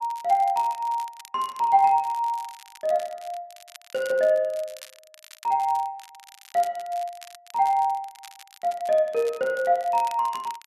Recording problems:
crackle; vinyl, SNR 22 dB

